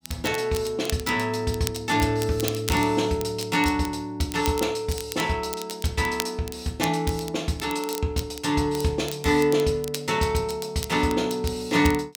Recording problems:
crackling; vinyl, SNR 13 dB

